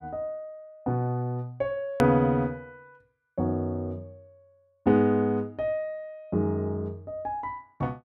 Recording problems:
hard cut with a click; at 2 s

